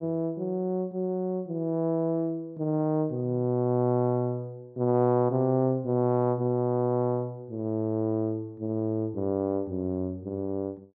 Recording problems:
none

